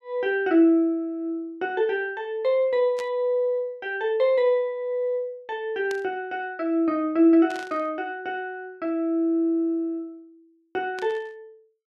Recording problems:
burst of static; 4 times, first at 3 s; peak -10 dB vs average level

